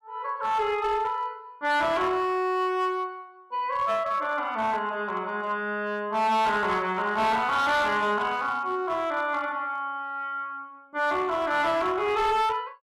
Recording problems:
distortion; hard clipping, uneven, signal-to-distortion ratio 11 dB

